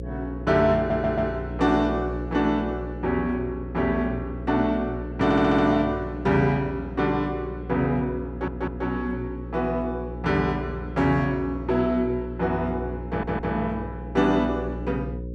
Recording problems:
electrical hum; 60 Hz, harmonics up to 540 Hz, SNR 10 dB
stutter; 4 times, first at 1 s

